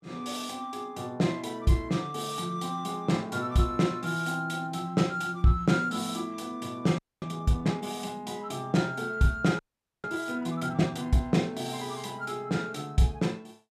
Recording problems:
frozen audio; at 7 s and at 9.5 s

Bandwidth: 14.5 kHz